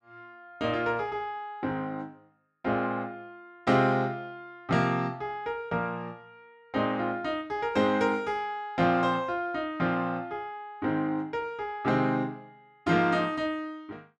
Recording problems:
none

